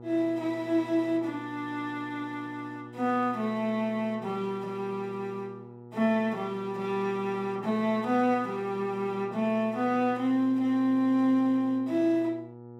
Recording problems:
hum; 60 Hz, harmonics up to 1.3 kHz, SNR 17 dB

